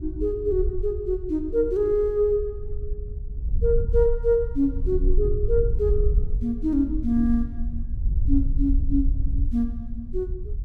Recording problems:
wind noise; below 58 Hz, SNR 4 dB

